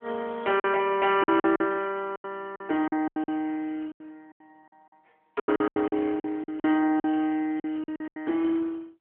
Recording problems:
telephone audio; 240 Hz to 3.3 kHz, AMR-NB
packet loss; 15% of the sound replaced, filled with silence

